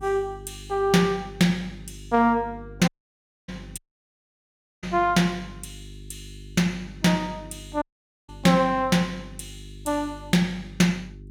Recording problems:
hum; 50 Hz, harmonics up to 400 Hz, SNR 20 dB
audio cutting out; at 3 s for 0.5 s, at 4 s for 1 s and at 8 s

